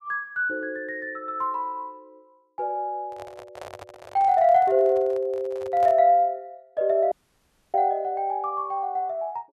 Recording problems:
handling noise; from 3 to 6 s; peak -10 dB vs average level
dropout; at 7 s for 0.5 s

